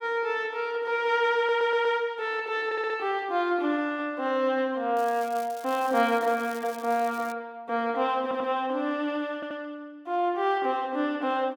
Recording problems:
stutter; 4 times, first at 1.5 s
crackling; from 5 to 7.5 s; loose cable, SNR 20 dB

